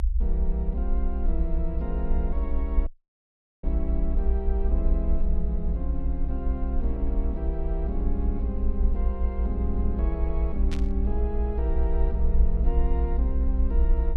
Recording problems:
low-frequency rumble; below 60 Hz, SNR -6 dB
audio cutting out; at 3 s for 1 s
static burst; at 11 s; peak -1 dB vs average level

